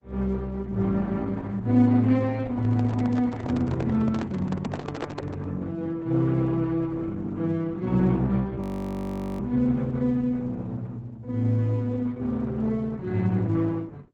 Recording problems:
lossy codec; Opus, log-spectral distance 2 dB, nothing above 17.7 kHz
handling noise; from 2.5 to 5.5 s; peak -3 dB vs average level
audio freezing; at 8.5 s for 1 s

